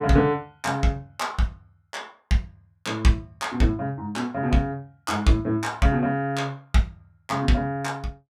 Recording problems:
none

